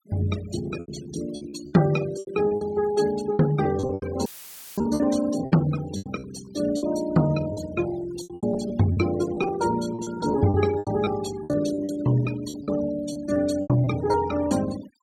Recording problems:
denoising artefacts; signal-to-artefact ratio 16 dB
packet loss; 13% of the sound replaced, filled with repeated pitch periods
audio cutting out; at 4.5 s for 0.5 s; filled with static

